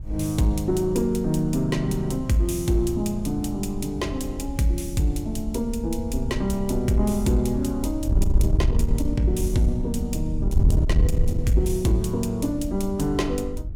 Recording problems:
distortion; soft clipping, signal-to-distortion ratio 11 dB
wind on the microphone; below 78 Hz, SNR 4 dB

